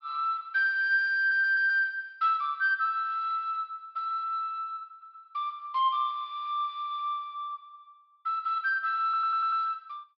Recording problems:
low-pass filter; nothing above 5.5 kHz
audio stuttering; at 1 s, at 5 s and at 9 s

